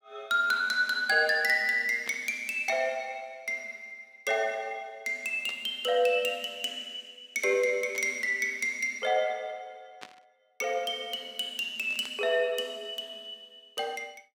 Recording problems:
static burst; 5 times, first at 2 s; peak -10 dB vs average level

